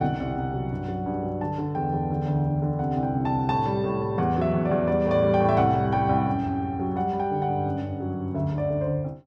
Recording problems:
none

